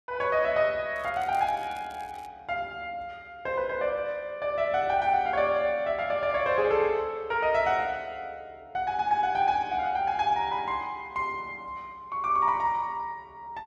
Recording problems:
crackle; from 1 to 2.5 s; loose cable, SNR 27 dB

